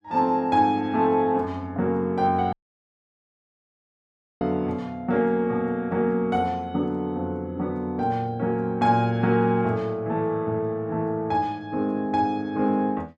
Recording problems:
dropout; at 2.5 s for 2 s

